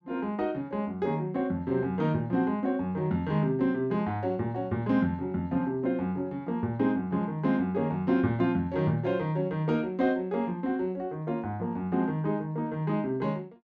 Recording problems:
none

